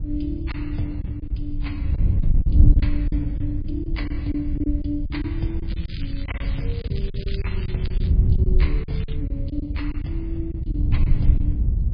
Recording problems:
lossy compression; MP3, log-spectral distance 2 dB, nothing above 4.5 kHz
electrical hum; 60 Hz, harmonics up to 960 Hz, SNR 24 dB
wind noise; below 86 Hz, SNR -7 dB
lost packets; 9% of the sound replaced, filled with silence
crackling; from 5.5 to 8 s and at 9 s; loose cable, SNR 11 dB

